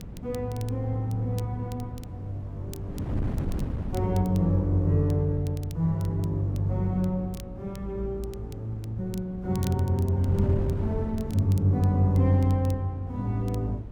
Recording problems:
hum; 60 Hz, harmonics up to 540 Hz, SNR 22 dB
wind noise; below 190 Hz, SNR 11 dB
crackle; vinyl, SNR 24 dB

